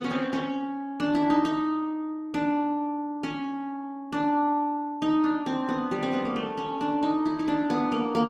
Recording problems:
codec artefacts; Opus, log-spectral distance 2 dB, nothing above 18.9 kHz

